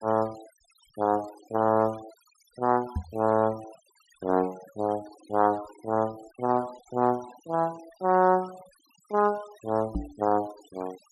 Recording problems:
denoising artefacts; signal-to-artefact ratio 23 dB
knock on the microphone; at 3 s and at 10 s; peak 0 dB vs average level

